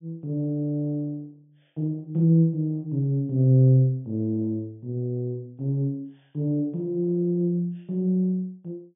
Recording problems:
treble cut off; nothing above 3.6 kHz

